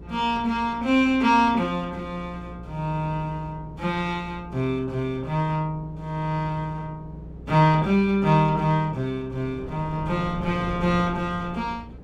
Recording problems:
hum; 60 Hz, harmonics up to 420 Hz, SNR 19 dB
wind noise; below 340 Hz, SNR 18 dB

